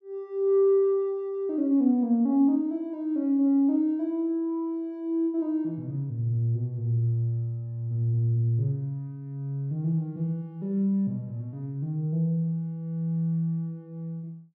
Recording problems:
none

